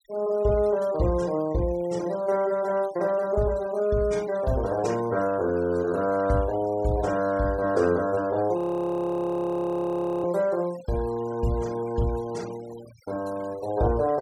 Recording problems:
denoising artefacts; signal-to-artefact ratio 21 dB
frozen audio; at 8.5 s for 1.5 s

